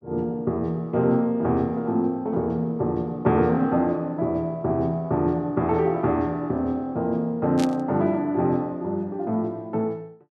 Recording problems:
burst of static; at 7.5 s; peak -6 dB vs average level

